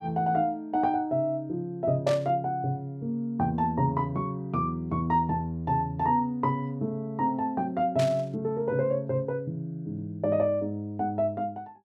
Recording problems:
static burst; at 2 s and at 8 s; peak -5 dB vs average level

